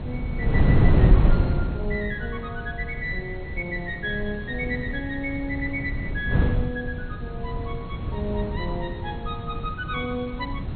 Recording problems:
codec artefacts; MP2, log-spectral distance 3 dB, nothing above 3.8 kHz
hiss; SNR 24 dB
wind noise; below 160 Hz, SNR -4 dB

